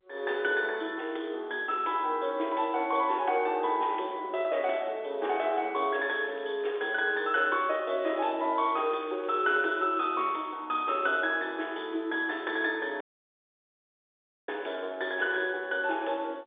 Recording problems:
telephone audio; 280 Hz to 3.6 kHz, G.711
crackle; from 6 to 10 s; loose cable, SNR 29 dB
dropout; at 13 s for 1.5 s

